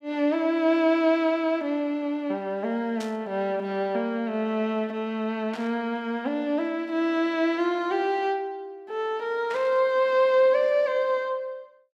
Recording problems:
burst of static; at 3 s, at 5.5 s and at 9.5 s; peak -10 dB vs average level

